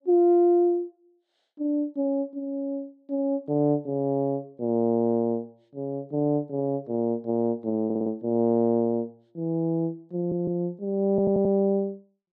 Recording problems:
audio stuttering; at 8 s, at 10 s and at 11 s

